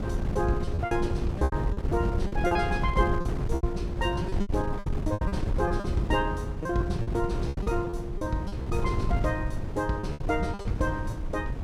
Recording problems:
wind noise; below 150 Hz, SNR 1 dB
lost packets; 13% of the sound replaced, filled with repeated pitch periods

